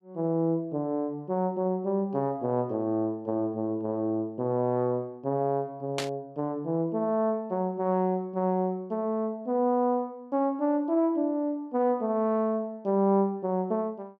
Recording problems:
burst of static; at 6 s; peak +1 dB vs average level

